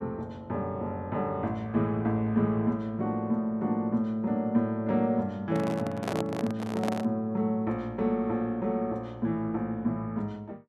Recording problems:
handling noise; from 5.5 to 7 s; peak +1 dB vs average level

